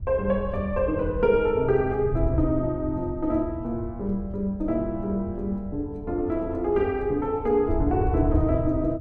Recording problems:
wind noise; below 96 Hz, SNR 8 dB

